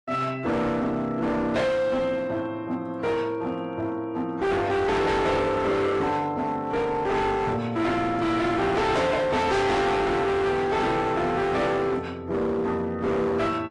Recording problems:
lossy codec; AAC, log-spectral distance 2 dB, nothing above 10.4 kHz
distortion; hard clipping, signal-to-distortion ratio 6 dB

